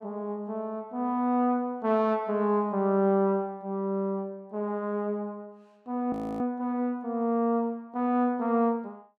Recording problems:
audio freezing; at 6 s

